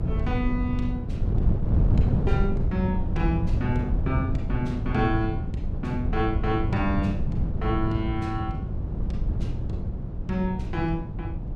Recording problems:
mains hum; 50 Hz, harmonics up to 350 Hz, SNR 22 dB
wind on the microphone; below 140 Hz, SNR -1 dB

